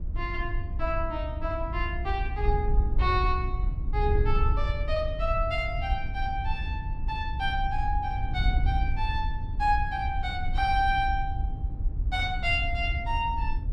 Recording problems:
wind noise; below 72 Hz, SNR 1 dB

